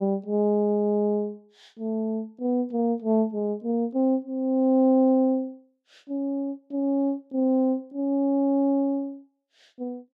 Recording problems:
none

